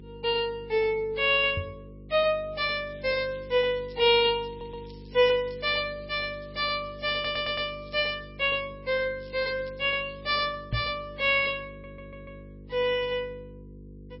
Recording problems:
lossy compression; MP3, log-spectral distance 4 dB, nothing above 5.3 kHz
hum; 50 Hz, harmonics up to 500 Hz, SNR 19 dB
microphone thump; at 1.5 s and at 11 s; peak 0 dB vs average level
crackling; from 3 to 6 s, from 6 to 8 s and from 9 to 10 s; loose cable, SNR 27 dB
stutter; at 4.5 s, at 7 s and at 12 s

